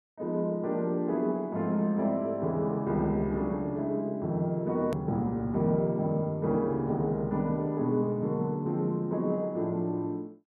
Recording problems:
hard cut with a click; at 5 s

